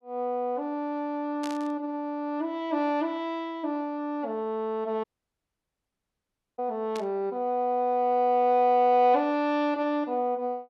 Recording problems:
burst of static; at 1.5 s and at 7 s; peak -9 dB vs average level
audio cutting out; at 5 s for 1.5 s

